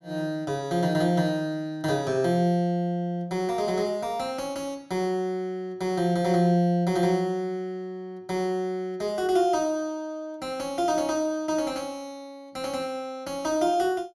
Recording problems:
none

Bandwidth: 15 kHz